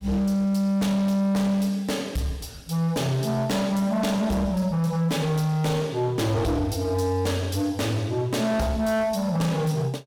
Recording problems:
distortion; hard clipping, signal-to-distortion ratio 8 dB

